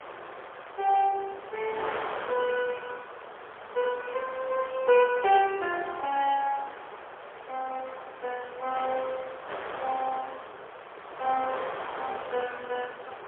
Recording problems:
phone line; 340 Hz to 3.9 kHz, AMR-NB, then MP3
background hiss; SNR 28 dB
wind noise; below 1.6 kHz, SNR 10 dB

